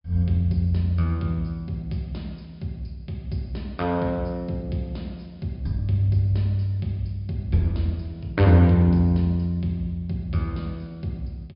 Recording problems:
treble missing; nothing above 5.5 kHz

